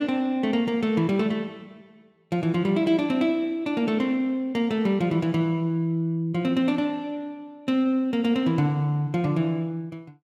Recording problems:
none

